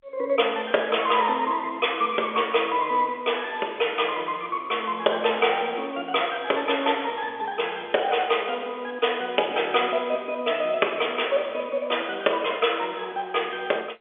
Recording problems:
telephone audio; 340 Hz to 3.5 kHz, G.711

